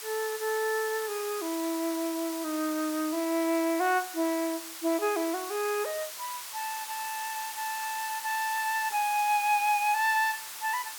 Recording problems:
hiss; SNR 8 dB

